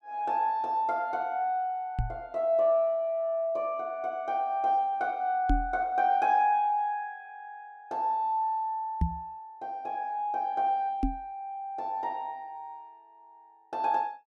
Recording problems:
knock on the microphone; 4 times, first at 2 s; peak +5 dB vs average level

